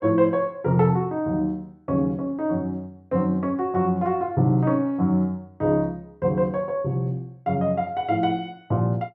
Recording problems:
none

